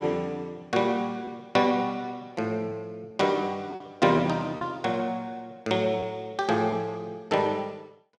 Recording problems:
packet loss; 2% of the sound replaced, filled with repeated pitch periods

